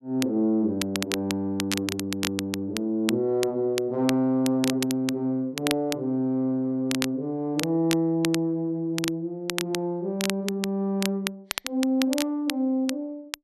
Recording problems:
crackling; vinyl, SNR 7 dB

